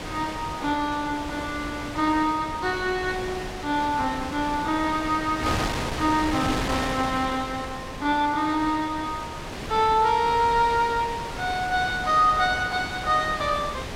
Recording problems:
wind on the microphone; below 2.3 kHz, SNR 8 dB

